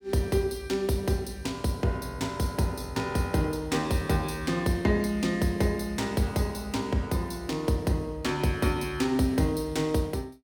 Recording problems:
none

